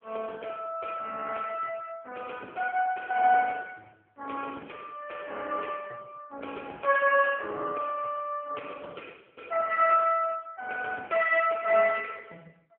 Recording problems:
phone line; 410 Hz to 2.5 kHz, AMR-NB

